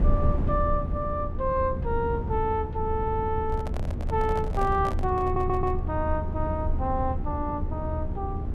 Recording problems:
hum; 60 Hz, harmonics up to 900 Hz, SNR 12 dB
rumble; below 94 Hz, SNR 2 dB
microphone handling noise; from 3.5 to 6 s; peak -3 dB vs average level
stutter; at 5 s

